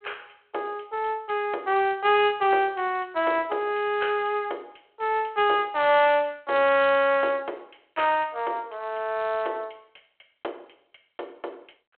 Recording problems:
phone line; 300 Hz to 3.3 kHz, G.726

